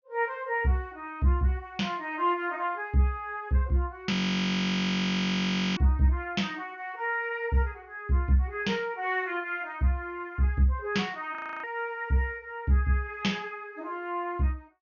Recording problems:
low-pass filter; nothing above 6.6 kHz
audio freezing; at 4 s for 1.5 s and at 11 s

